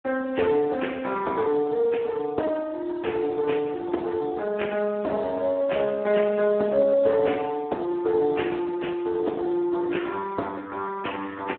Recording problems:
telephone audio; 280 Hz to 3.2 kHz, Speex

